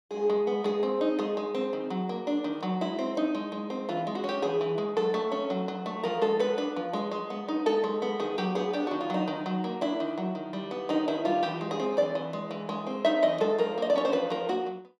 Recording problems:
none

